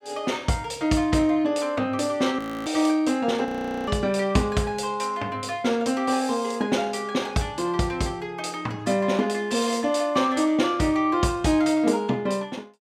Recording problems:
frozen audio; at 2.5 s and at 3.5 s

